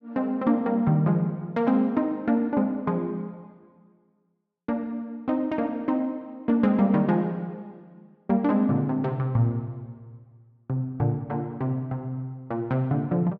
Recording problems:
none

